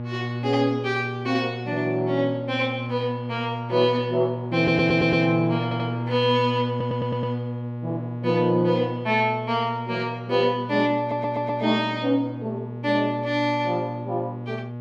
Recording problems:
hum; 60 Hz, harmonics up to 1.1 kHz, SNR 8 dB
audio stuttering; 4 times, first at 4.5 s

